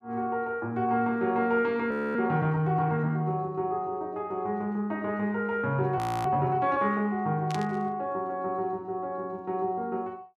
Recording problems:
frozen audio; at 2 s and at 6 s
static burst; at 7.5 s; peak -7 dB vs average level

